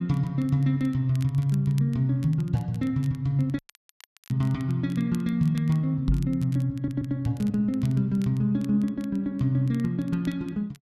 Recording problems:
crackling; vinyl, SNR 27 dB
audio cutting out; at 3.5 s for 0.5 s
microphone bump; at 6 s; peak +3 dB vs average level
stutter; at 7 s

